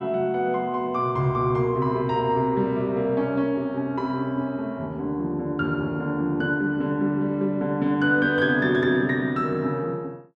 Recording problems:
none

